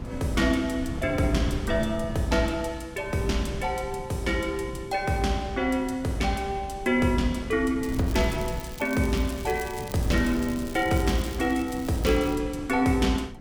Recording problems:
wind on the microphone; below 200 Hz, SNR 12 dB
crackle; from 8 to 12 s; loose cable, SNR 17 dB

